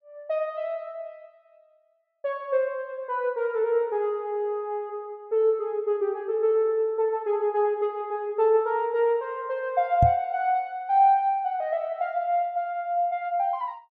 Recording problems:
microphone thump; at 10 s; peak +6 dB vs average level

